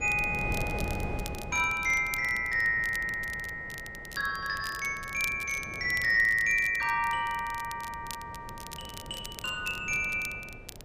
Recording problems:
wind on the microphone; below 470 Hz, SNR 14 dB
crackle; vinyl, SNR 17 dB

